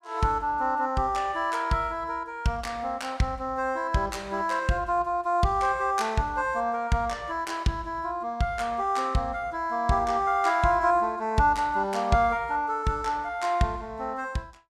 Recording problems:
none

